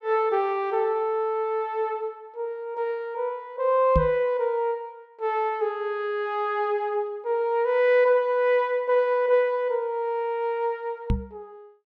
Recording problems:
microphone thump; at 4 s and at 11 s; peak +4 dB vs average level

